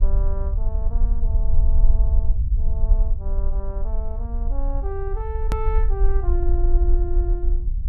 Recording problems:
rumble; below 50 Hz, strongest tone 20 Hz, SNR -11 dB
edit click; at 5.5 s

